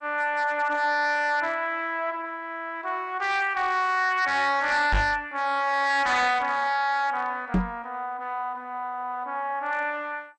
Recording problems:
codec artefacts; MP2, log-spectral distance 2 dB, nothing above 8.2 kHz
distorted audio; hard clipping, signal-to-distortion ratio 11 dB
microphone bump; at 5 s and at 7.5 s; peak +5 dB vs average level

